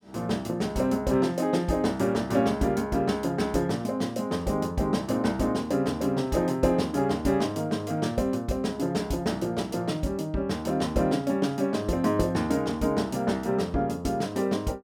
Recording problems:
none

